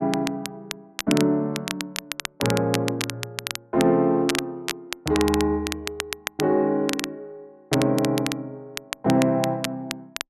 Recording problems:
crackle; vinyl, SNR 8 dB

